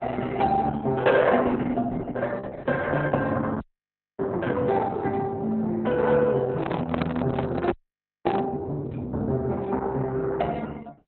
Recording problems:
lossy compression; Opus, log-spectral distance 3 dB, nothing above 3.6 kHz
audio freezing; at 3.5 s for 0.5 s and at 7.5 s for 0.5 s
handling noise; from 6.5 to 8.5 s; peak +3 dB vs average level

